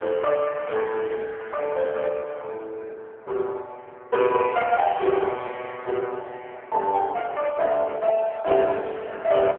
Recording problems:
phone line; 320 Hz to 3.3 kHz, AMR-NB

